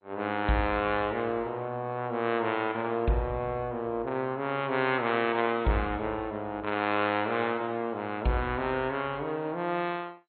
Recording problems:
codec artefacts; MP2, log-spectral distance 2 dB, nothing above 4.2 kHz

